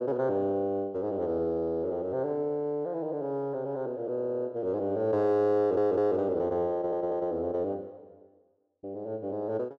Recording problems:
audio stuttering; at 4 s, at 5.5 s and at 6.5 s

